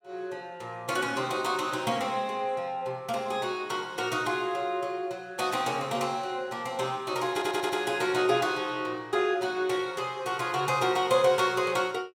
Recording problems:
stutter; at 7.5 s

